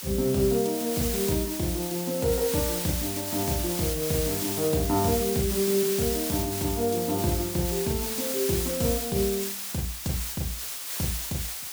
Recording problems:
hiss; slope +2 dB per octave, SNR 2 dB

